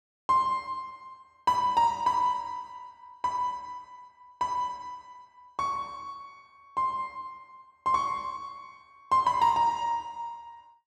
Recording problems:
none

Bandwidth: 12.5 kHz